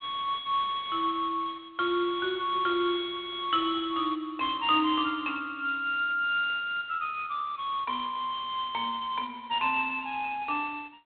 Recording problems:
phone line; 370 Hz to 3.5 kHz, G.726

